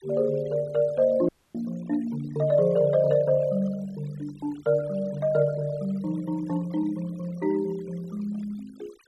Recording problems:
denoising artefacts; signal-to-artefact ratio 24 dB
dropout; at 1.5 s

